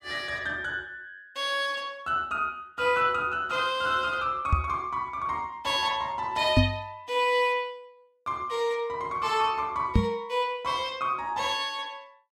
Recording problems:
microphone bump; at 4.5 s, at 6.5 s and at 10 s; peak +9 dB vs average level

